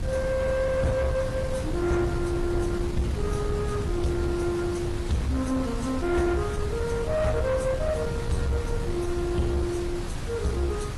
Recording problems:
codec artefacts; AAC, then AAC, log-spectral distance 3 dB, nothing above 11.3 kHz
distorted audio; soft clipping, signal-to-distortion ratio 12 dB
background hiss; slope -3 dB per octave, SNR 13 dB
rumble; below 150 Hz, SNR 4 dB

